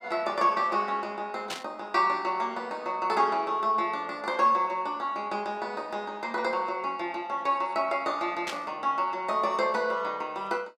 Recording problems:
burst of static; at 1.5 s and at 8.5 s; peak -2 dB vs average level

